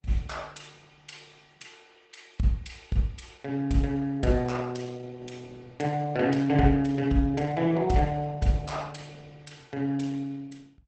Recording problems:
codec artefacts; Opus, log-spectral distance 4 dB, nothing above 8.2 kHz

